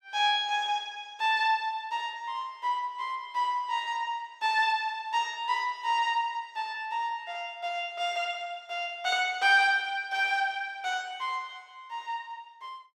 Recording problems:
none

